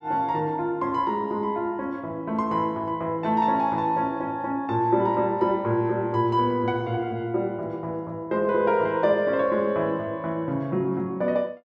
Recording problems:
none

